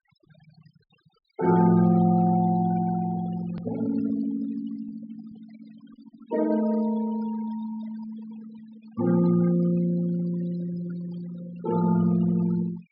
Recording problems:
low-pass filter; nothing above 5.5 kHz
denoising artefacts; signal-to-artefact ratio 18 dB
edit click; at 3.5 s

